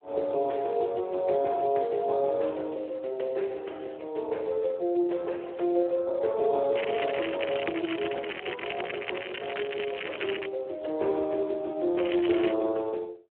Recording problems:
phone line; 300 Hz to 3.4 kHz, Speex
crackle; from 7 to 10 s and at 12 s; loose cable, SNR 7 dB

